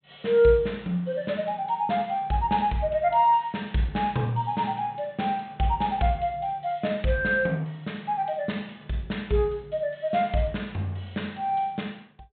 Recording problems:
treble cut off; nothing above 4 kHz

